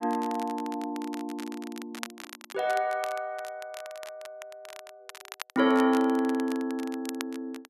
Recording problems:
crackling; vinyl, SNR 15 dB

